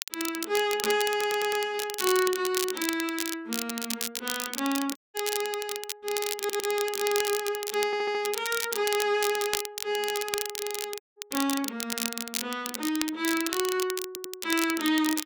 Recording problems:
crackle; vinyl, SNR 4 dB
stutter; 4 times, first at 1 s
audio cutting out; at 5 s and at 11 s

